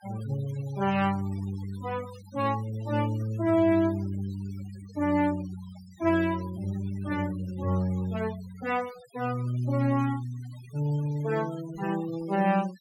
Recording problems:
noise reduction artefacts; signal-to-artefact ratio 20 dB

